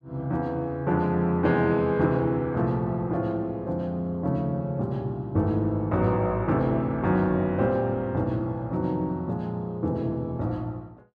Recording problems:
none

